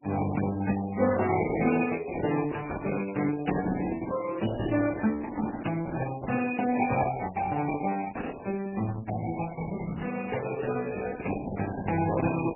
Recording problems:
codec artefacts; Opus, then MP3, log-spectral distance 5 dB, nothing above 2.5 kHz

